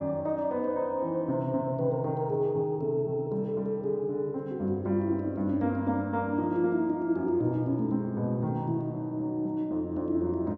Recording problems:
none

